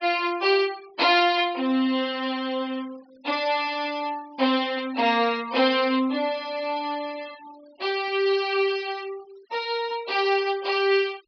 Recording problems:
treble missing; nothing above 5.5 kHz
denoising artefacts; signal-to-artefact ratio 24 dB

